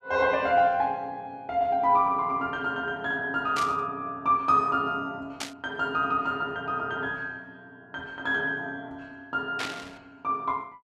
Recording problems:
static burst; at 3.5 s, at 5.5 s and at 9.5 s; peak -2 dB vs average level

